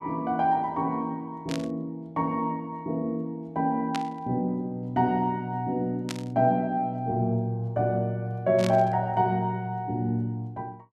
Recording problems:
static burst; 4 times, first at 1.5 s; peak -3 dB vs average level

